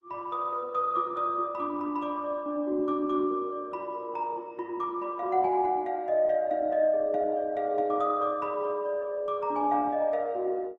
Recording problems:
codec artefacts; Opus, then Opus, log-spectral distance 2 dB

